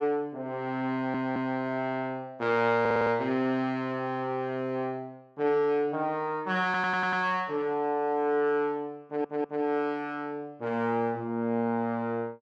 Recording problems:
audio stuttering; 4 times, first at 1 s

